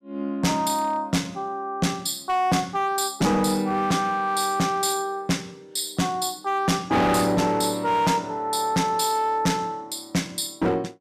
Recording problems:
distorted audio; hard clipping, signal-to-distortion ratio 7 dB

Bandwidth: 14.5 kHz